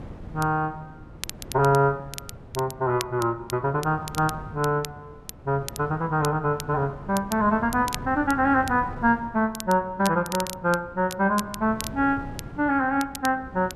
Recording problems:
wind on the microphone; below 310 Hz, SNR 17 dB
crackle; vinyl, SNR 14 dB

